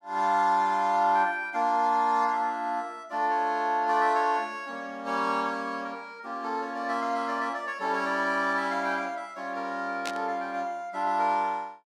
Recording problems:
burst of static; at 10 s; peak -3 dB vs average level

